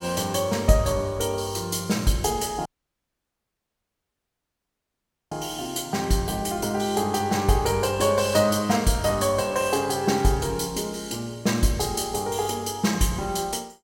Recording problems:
audio cutting out; at 2.5 s for 2.5 s

